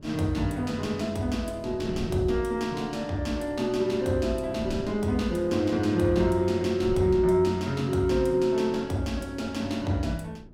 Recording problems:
wind noise; below 220 Hz, SNR 17 dB

